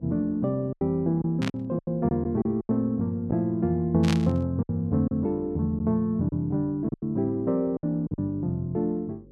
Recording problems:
electrical hum; 50 Hz, harmonics up to 550 Hz, SNR 27 dB
packet loss; 8% of the sound replaced, filled with silence
static burst; at 1.5 s and at 4 s; peak -2 dB vs average level

